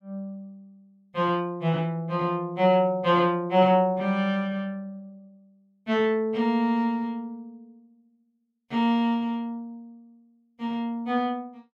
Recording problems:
none

